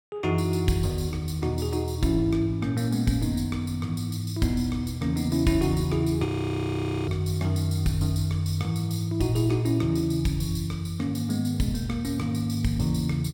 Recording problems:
frozen audio; at 6.5 s for 1 s

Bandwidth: 17 kHz